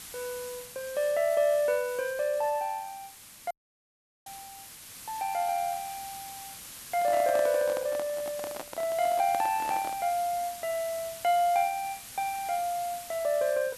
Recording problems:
hiss; slope +1 dB per octave, SNR 13 dB
audio cutting out; at 3.5 s for 1 s
handling noise; from 7 to 10 s; peak -6 dB vs average level

